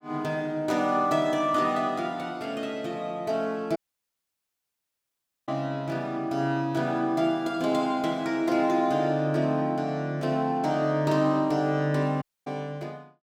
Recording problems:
dropout; at 4 s for 1.5 s and at 12 s

